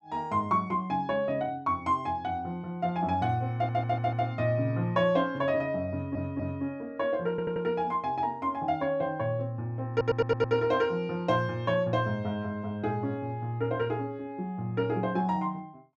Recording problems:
stutter; 4 times, first at 3.5 s

